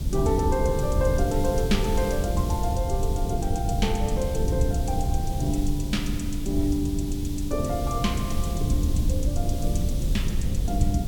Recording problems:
background hiss; SNR 13 dB
low-frequency rumble; below 100 Hz, SNR 0 dB

